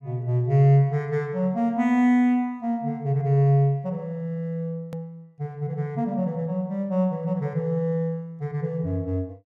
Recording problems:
click at an edit; at 5 s

